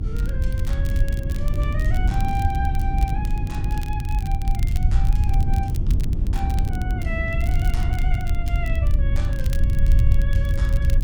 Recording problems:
electrical hum; 50 Hz, harmonics up to 350 Hz, SNR 3 dB
rumble; below 78 Hz, SNR -9 dB
wind on the microphone; below 160 Hz, SNR 0 dB
crackling; vinyl, SNR 12 dB

